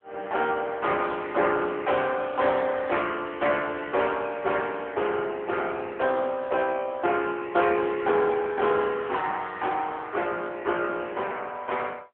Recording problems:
phone line; 300 Hz to 3.4 kHz, AMR-NB

